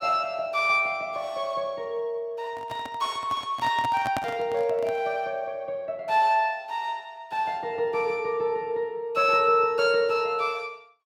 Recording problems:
handling noise; from 2.5 to 5 s; peak 0 dB vs average level

